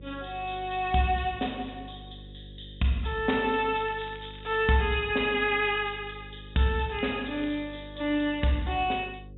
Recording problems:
treble cut off; nothing above 3.7 kHz
electrical hum; 50 Hz, harmonics up to 550 Hz, SNR 18 dB
crackling; from 4 to 5 s and at 7 s; loose cable, SNR 22 dB

